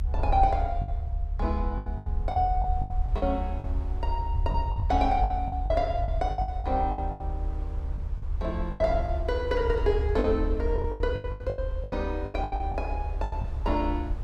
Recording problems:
rumble; below 72 Hz, SNR 2 dB
wind on the microphone; below 1.1 kHz, SNR 21 dB
packet loss; 15% of the sound replaced, filled with the last packet

